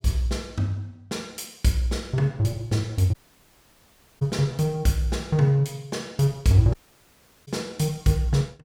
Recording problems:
dropout; at 3 s for 1 s and at 6.5 s for 0.5 s

